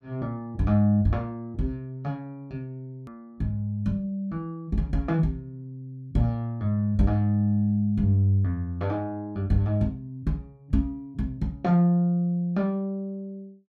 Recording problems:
hard cut with a click; at 3 s

